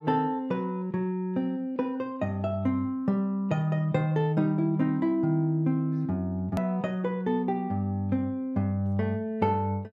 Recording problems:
edit click; at 6.5 s

